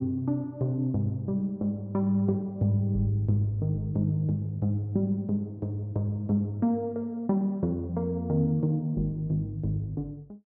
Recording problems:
none

